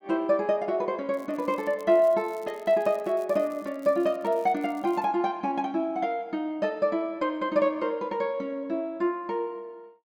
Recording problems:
crackling; from 1 to 5 s; loose cable, SNR 29 dB

